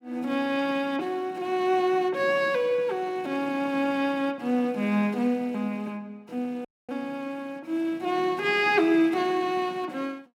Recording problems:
audio cutting out; at 6.5 s

